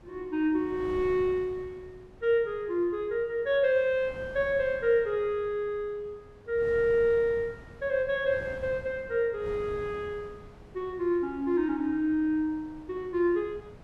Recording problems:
wind noise; below 460 Hz, SNR 20 dB

